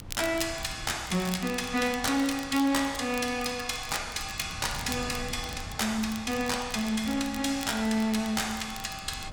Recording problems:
distortion; hard clipping, uneven, signal-to-distortion ratio 10 dB
wind on the microphone; below 210 Hz, SNR 16 dB
crackling; vinyl, SNR 15 dB

